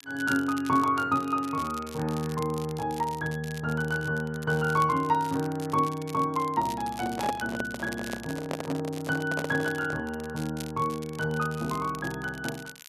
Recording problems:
crackle; vinyl, SNR 17 dB
handling noise; from 7 to 10 s; peak +1 dB vs average level

